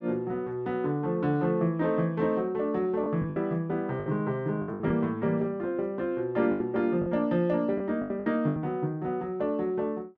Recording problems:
packet loss; 7% of the sound replaced, filled with the last packet

